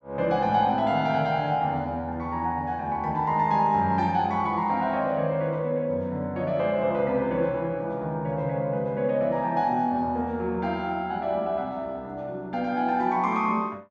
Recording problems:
none

